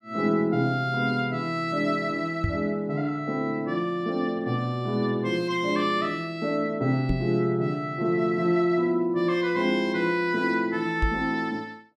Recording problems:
microphone thump; at 2.5 s, at 7 s and at 11 s; peak +3 dB vs average level

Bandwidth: 14.5 kHz